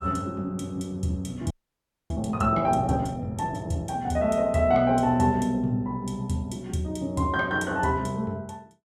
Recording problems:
frozen audio; at 1.5 s for 0.5 s

